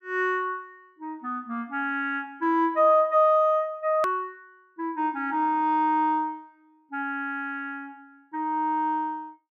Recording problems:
hard cut with a click; at 4 s

